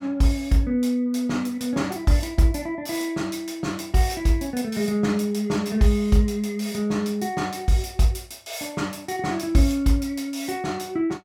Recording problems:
none

